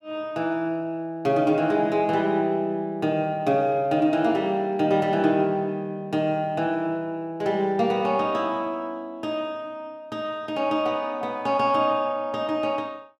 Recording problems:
none

